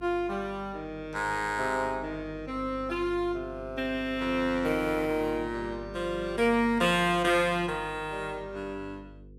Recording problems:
hum; 50 Hz, harmonics up to 500 Hz, SNR 18 dB

